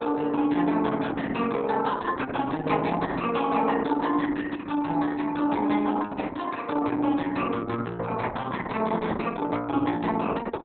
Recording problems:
lossy codec; MP2, then Opus, log-spectral distance 5 dB, nothing above 4 kHz

